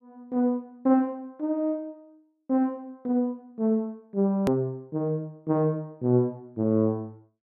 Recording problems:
hard cut with a click; at 4.5 s

